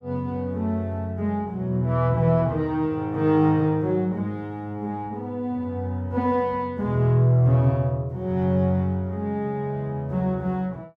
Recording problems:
none

